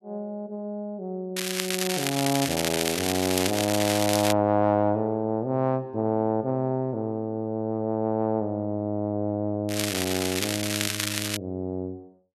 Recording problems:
crackling; from 1.5 to 4.5 s and from 9.5 to 11 s; loose cable, SNR 1 dB

